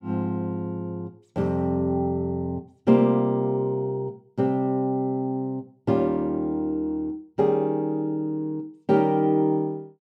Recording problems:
none

